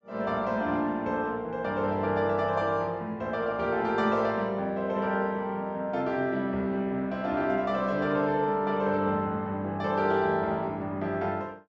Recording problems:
low-pass filter; nothing above 7.7 kHz

